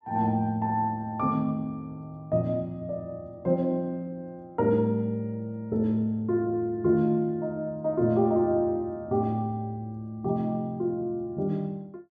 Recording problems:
none

